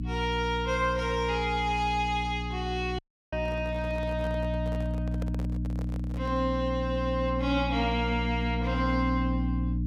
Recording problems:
hum; 60 Hz, harmonics up to 300 Hz, SNR 3 dB
audio cutting out; at 3 s
microphone handling noise; from 3.5 to 6.5 s; peak -6 dB vs average level

